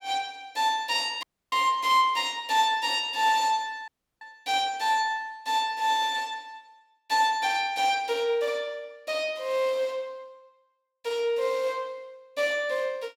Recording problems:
dropout; at 1 s and at 4 s

